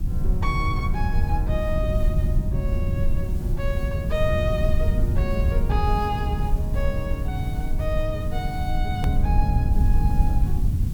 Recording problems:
hiss; slope -3 dB per octave, SNR 19 dB
rumble; below 94 Hz, SNR -5 dB
click at an edit; at 9 s

